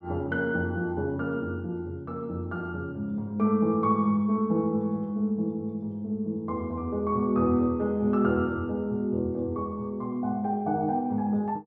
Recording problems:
none

